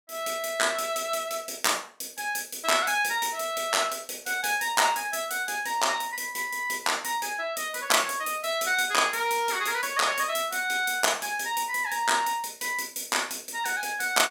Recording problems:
none

